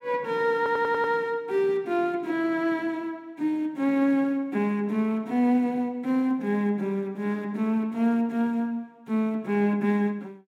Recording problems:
stutter; at 0.5 s

